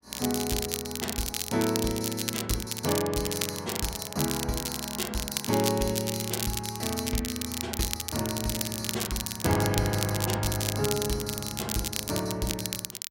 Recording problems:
crackling; vinyl, SNR 2 dB

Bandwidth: 16 kHz